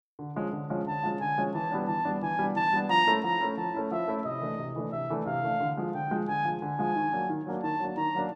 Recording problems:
none

